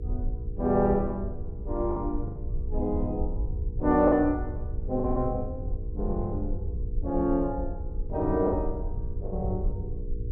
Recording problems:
hum; 60 Hz, harmonics up to 480 Hz, SNR 17 dB
low-frequency rumble; below 74 Hz, SNR 6 dB
lost packets; 5% of the sound replaced, filled with the last packet

